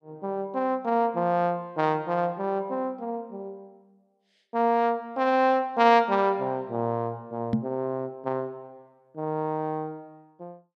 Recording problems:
knock on the microphone; at 7.5 s; peak +5 dB vs average level

